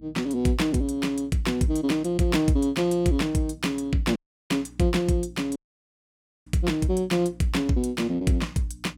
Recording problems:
electrical hum; 60 Hz, harmonics up to 300 Hz, SNR 24 dB
dropout; at 4 s and at 5.5 s for 1 s

